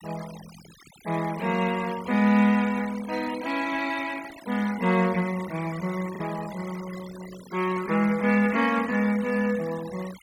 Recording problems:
denoising artefacts; signal-to-artefact ratio 17 dB
lost packets; 0.4% of the sound replaced, filled with the last packet

